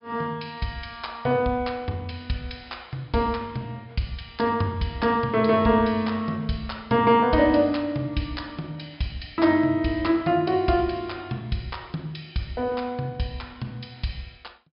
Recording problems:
treble missing; nothing above 5.5 kHz

